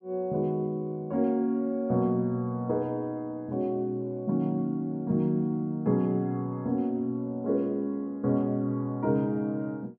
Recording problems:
none

